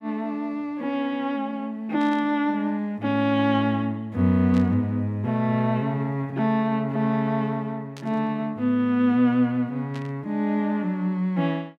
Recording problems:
static burst; 4 times, first at 2 s; peak -13 dB vs average level

